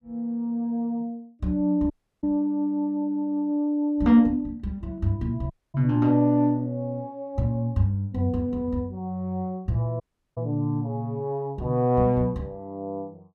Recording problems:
dropout; at 2 s, at 5.5 s and at 10 s

